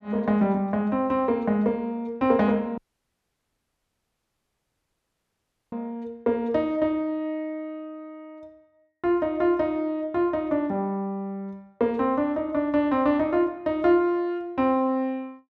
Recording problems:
audio cutting out; at 3 s for 3 s

